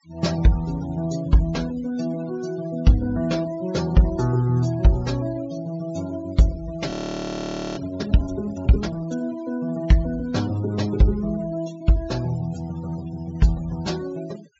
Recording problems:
low-pass filter; nothing above 8 kHz
noise reduction artefacts; signal-to-artefact ratio 19 dB
frozen audio; at 7 s for 1 s

